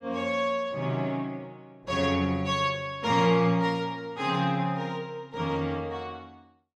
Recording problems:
none

